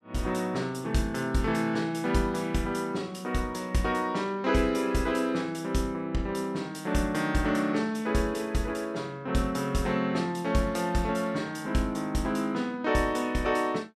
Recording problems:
none

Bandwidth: 14.5 kHz